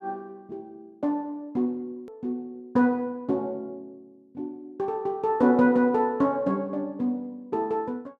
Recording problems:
edit click; at 2 s

